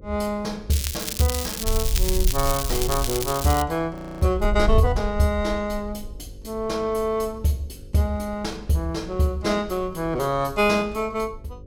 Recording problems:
hum; 50 Hz, harmonics up to 550 Hz, SNR 21 dB
wind on the microphone; below 58 Hz, SNR 5 dB
crackle; from 0.5 to 3.5 s; loose cable, SNR 4 dB
frozen audio; at 4 s

